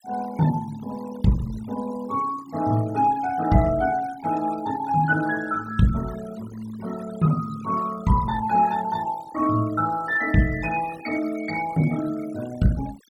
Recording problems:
noise reduction artefacts; signal-to-artefact ratio 17 dB

